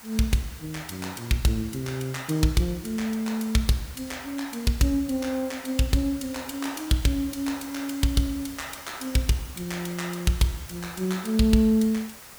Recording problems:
hiss; slope -1 dB per octave, SNR 16 dB

